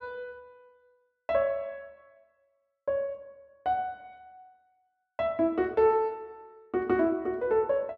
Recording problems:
none

